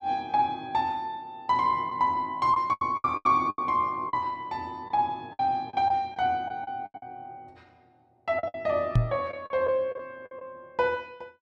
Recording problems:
packet loss; 9% of the sound replaced, filled with the last packet
microphone bump; at 9 s; peak +8 dB vs average level

